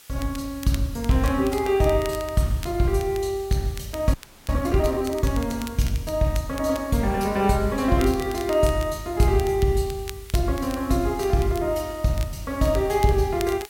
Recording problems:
hiss; slope +1 dB per octave, SNR 22 dB
crackle; vinyl, SNR 19 dB
audio freezing; at 4 s

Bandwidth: 16.5 kHz